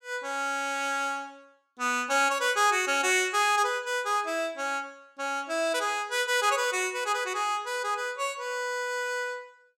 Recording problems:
none

